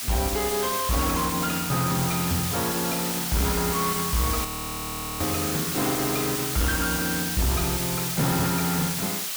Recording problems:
distorted audio; soft clipping, signal-to-distortion ratio 6 dB
background hiss; slope +3 dB per octave, SNR 1 dB
frozen audio; at 4.5 s for 1 s

